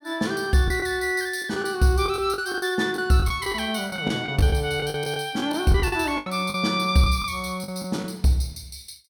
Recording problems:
lost packets; 11% of the sound replaced, filled with the last packet

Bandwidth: 17 kHz